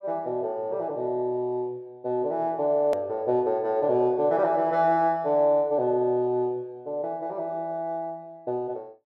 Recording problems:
edit click; at 3 s

